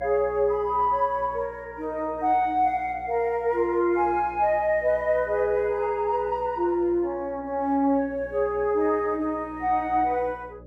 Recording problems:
hum; 60 Hz, harmonics up to 600 Hz, SNR 23 dB

